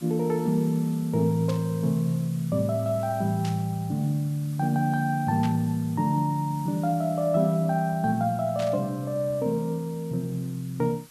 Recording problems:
hiss; SNR 22 dB
burst of static; 4 times, first at 1.5 s; peak -9 dB vs average level

